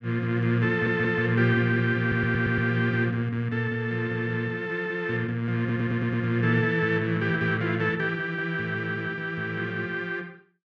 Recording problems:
stutter; at 0.5 s, at 2 s and at 5.5 s

